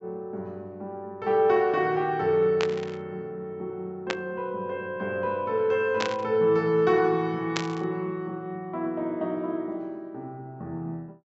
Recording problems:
treble cut off; nothing above 7.7 kHz
static burst; 4 times, first at 2.5 s; peak +2 dB vs average level

